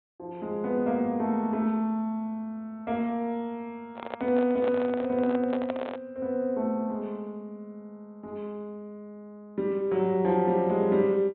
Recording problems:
treble cut off; nothing above 4 kHz
microphone handling noise; from 4 to 6 s; peak -2 dB vs average level

